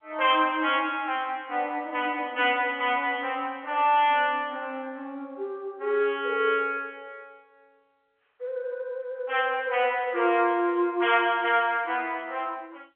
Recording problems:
phone line; 300 Hz to 3.4 kHz, G.711

